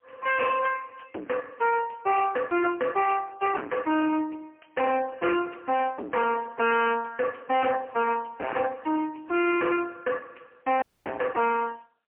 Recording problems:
phone line; 260 Hz to 3 kHz, AMR-NB, then MP3
distortion; hard clipping, signal-to-distortion ratio 5 dB
audio cutting out; at 11 s

